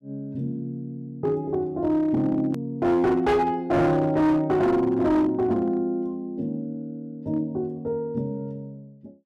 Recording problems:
distorted audio; hard clipping, uneven, signal-to-distortion ratio 11 dB
edit click; at 2.5 s

